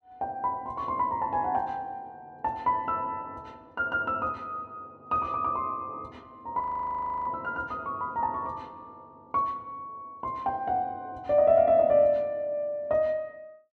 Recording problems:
frozen audio; at 6.5 s for 0.5 s

